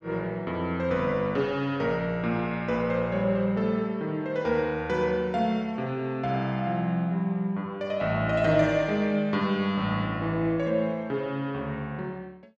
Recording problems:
none

